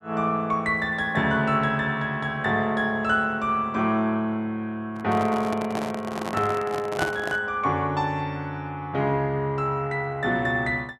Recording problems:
handling noise; from 5 to 7.5 s; peak +3 dB vs average level

